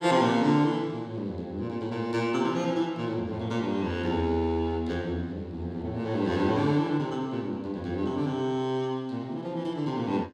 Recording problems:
none

